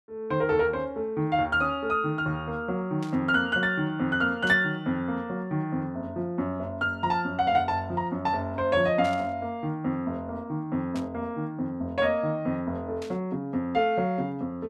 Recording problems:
burst of static; 5 times, first at 3 s; peak -11 dB vs average level

